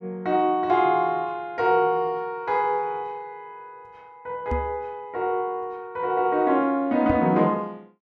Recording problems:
microphone thump; at 4.5 s and at 7 s; peak -2 dB vs average level

